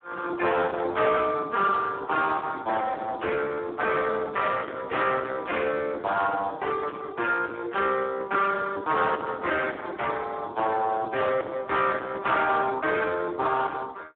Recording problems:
telephone audio; 260 Hz to 2.2 kHz, Speex
distortion; soft clipping, signal-to-distortion ratio 10 dB

